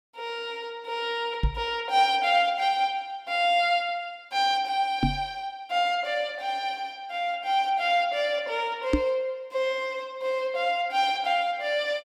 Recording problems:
microphone bump; at 1.5 s, at 5 s and at 9 s; peak +7 dB vs average level

